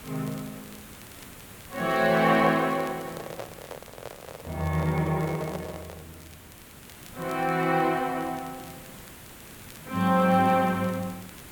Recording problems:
hiss; slope -3 dB per octave, SNR 19 dB
crackling; vinyl, SNR 28 dB
microphone handling noise; from 2.5 to 6 s; peak -7 dB vs average level

